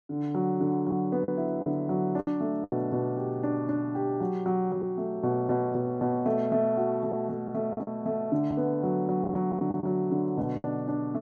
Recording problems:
packet loss; 5% of the sound replaced, filled with the last packet

